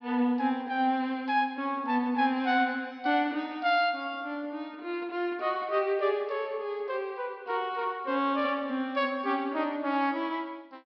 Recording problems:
low-pass filter; nothing above 5.5 kHz

